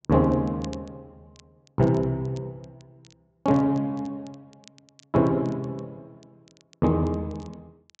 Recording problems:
low-pass filter; nothing above 8 kHz
crackling; vinyl, SNR 29 dB

